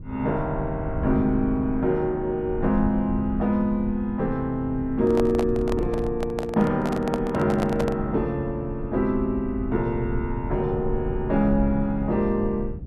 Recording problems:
rumble; below 100 Hz, SNR 10 dB
microphone handling noise; from 5 to 8 s; peak -1 dB vs average level

